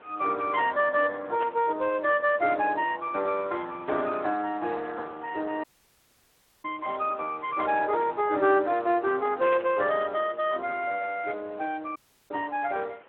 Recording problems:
phone line; 300 Hz to 3.1 kHz, Speex
background hiss; SNR 27 dB
burst of static; at 1.5 s and at 9.5 s; peak -6 dB vs average level
audio cutting out; at 5.5 s for 1 s and at 12 s

